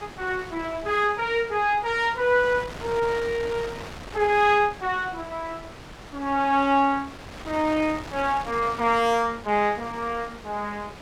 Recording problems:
wind noise; below 2.2 kHz, SNR 15 dB

